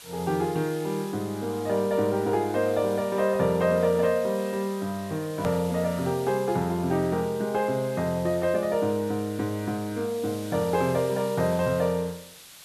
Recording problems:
hiss; slope +2 dB per octave, SNR 18 dB
edit click; at 5.5 s

